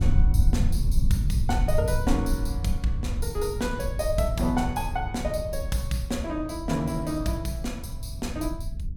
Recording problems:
rumble; below 78 Hz, SNR 1 dB

